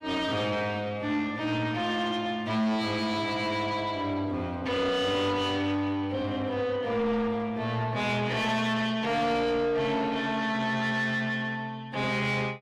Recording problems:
distortion; soft clipping, signal-to-distortion ratio 10 dB

